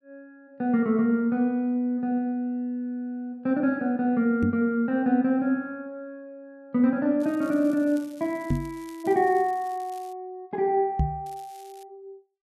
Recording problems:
microphone bump; at 4.5 s, at 8.5 s and at 11 s; peak +4 dB vs average level
crackle; from 7 to 10 s and at 11 s; loose cable, SNR 27 dB

